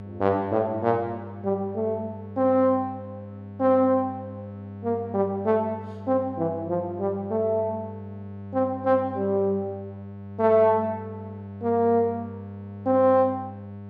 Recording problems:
electrical hum; 50 Hz, harmonics up to 1.1 kHz, SNR 14 dB

